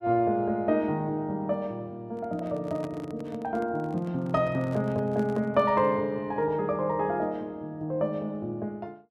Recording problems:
handling noise; from 2 to 6 s; peak -8 dB vs average level

